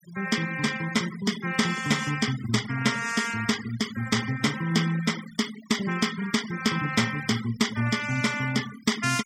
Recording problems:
noise reduction artefacts; signal-to-artefact ratio 12 dB

